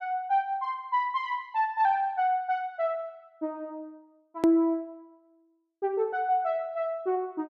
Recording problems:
hard cut with a click; at 4.5 s

